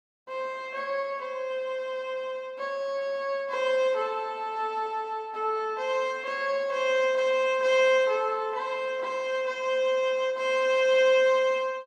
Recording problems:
none

